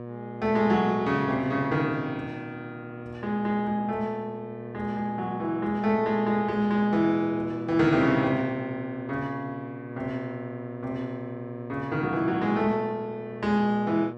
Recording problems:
mains hum; 60 Hz, harmonics up to 1.3 kHz, SNR 12 dB

